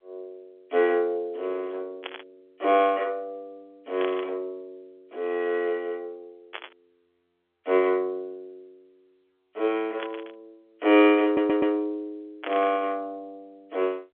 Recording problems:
phone line; 300 Hz to 3.5 kHz, G.711
burst of static; 5 times, first at 2 s; peak -5 dB vs average level
stutter; at 11 s

